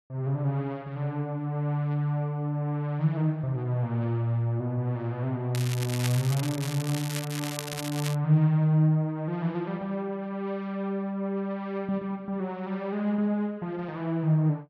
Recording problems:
crackle; from 5.5 to 8 s; loose cable, SNR 9 dB

